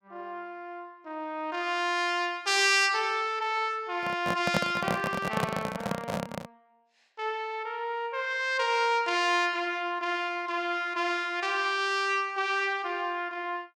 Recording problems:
microphone handling noise; from 4 to 6.5 s; peak +4 dB vs average level

